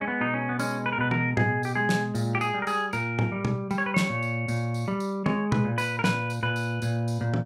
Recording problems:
none

